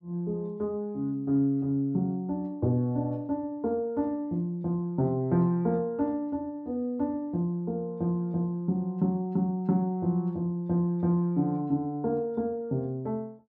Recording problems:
none

